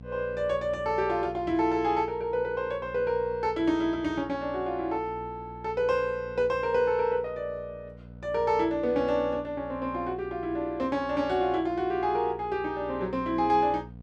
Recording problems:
electrical hum; 60 Hz, harmonics up to 720 Hz, SNR 18 dB

